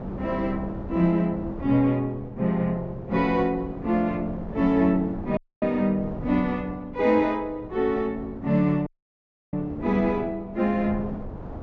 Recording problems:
low-pass filter; nothing above 7.6 kHz
wind on the microphone; below 430 Hz, SNR 13 dB
audio cutting out; at 5.5 s and at 9 s for 0.5 s

